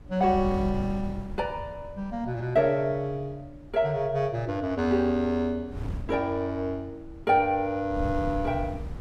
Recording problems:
wind on the microphone; below 140 Hz, SNR 12 dB

